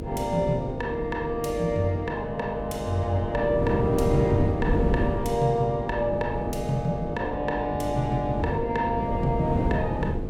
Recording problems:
hum; 50 Hz, harmonics up to 500 Hz, SNR 9 dB
wind on the microphone; below 300 Hz, SNR 4 dB

